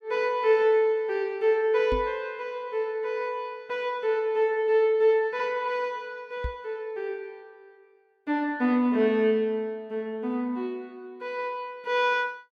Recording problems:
microphone thump; at 2 s and at 6.5 s; peak -3 dB vs average level

